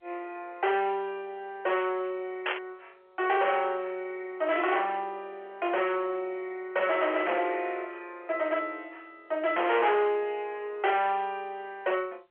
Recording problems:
phone line; 370 Hz to 3.4 kHz, G.711
distorted audio; hard clipping, signal-to-distortion ratio 8 dB
burst of static; at 2.5 s; peak +2 dB vs average level

